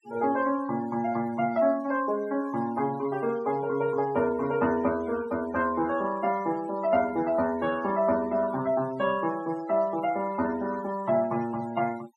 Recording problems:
noise reduction artefacts; signal-to-artefact ratio 18 dB

